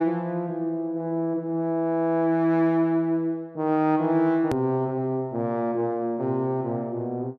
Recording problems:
edit click; at 4.5 s

